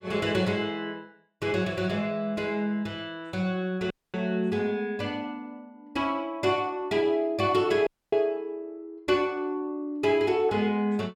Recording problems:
dropout; at 4 s and at 8 s

